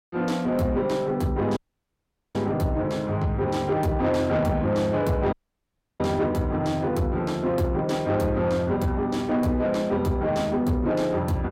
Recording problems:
distortion; soft clipping, signal-to-distortion ratio 12 dB
dropout; at 1.5 s for 1 s and at 5.5 s for 0.5 s

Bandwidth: 16.5 kHz